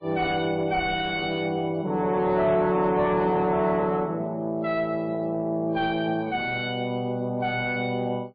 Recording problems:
codec artefacts; MP3, log-spectral distance 2 dB, nothing above 4.5 kHz
distorted audio; soft clipping, signal-to-distortion ratio 10 dB

